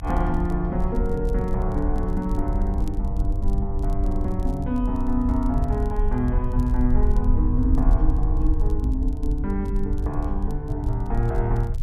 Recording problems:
low-frequency rumble; below 62 Hz, SNR -1 dB
crackle; vinyl, SNR 29 dB

